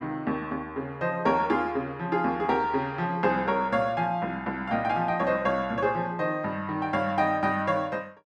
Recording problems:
none

